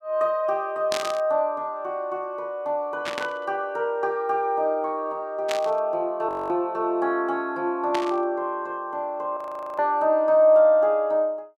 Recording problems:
burst of static; 4 times, first at 1 s; peak -2 dB vs average level
frozen audio; at 6.5 s and at 9.5 s

